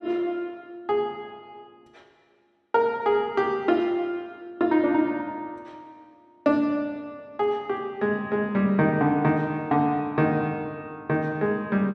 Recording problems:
none

